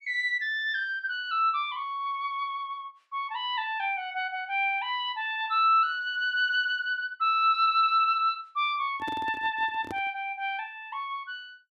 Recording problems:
handling noise; from 9 to 10 s; peak -7 dB vs average level

